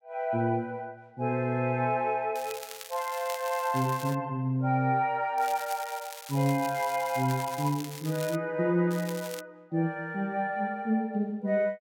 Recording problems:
crackling; from 2.5 to 4 s, from 5.5 to 8.5 s and at 9 s; loose cable, SNR 13 dB

